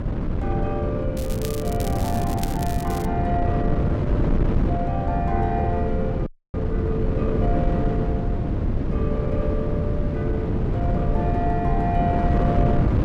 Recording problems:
wind noise; below 240 Hz, SNR -5 dB
crackling; from 1 to 3 s; loose cable, SNR 9 dB
frozen audio; at 6.5 s

